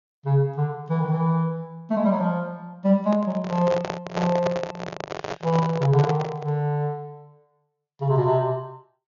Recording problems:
treble cut off; nothing above 6.8 kHz
handling noise; from 3 to 6.5 s; peak +1 dB vs average level

